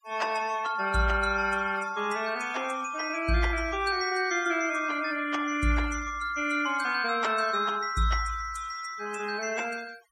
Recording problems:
noise reduction artefacts; signal-to-artefact ratio 18 dB

